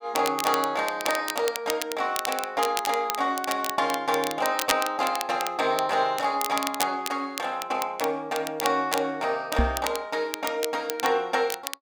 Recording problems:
crackle; vinyl, SNR 7 dB
microphone bump; at 9.5 s; peak +6 dB vs average level

